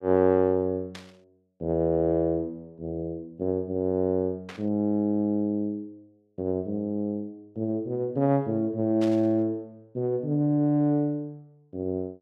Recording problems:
static burst; at 1 s, at 4.5 s and at 9 s; peak -10 dB vs average level

